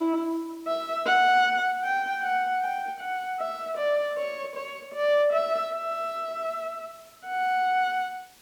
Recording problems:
background hiss; slope -1 dB per octave, SNR 27 dB

